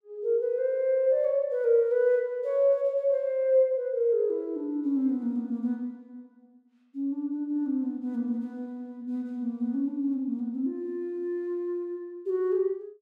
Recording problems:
none

